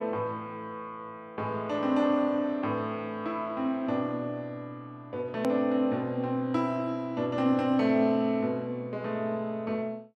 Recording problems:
edit click; at 5.5 s

